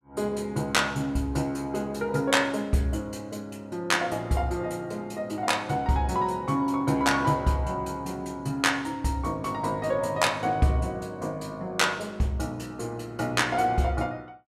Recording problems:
none

